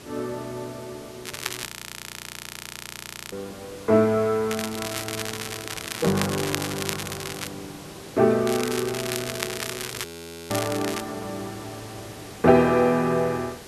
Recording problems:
background hiss; slope -4 dB per octave, SNR 17 dB
crackling; at 1.5 s, from 4.5 to 7.5 s and from 8.5 to 11 s; loose cable, SNR 8 dB
audio freezing; at 1.5 s for 1.5 s and at 10 s

